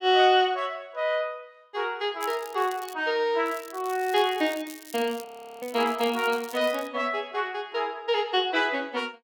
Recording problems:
crackling; at 2 s and from 3.5 to 7 s; loose cable, SNR 18 dB
frozen audio; at 5.5 s

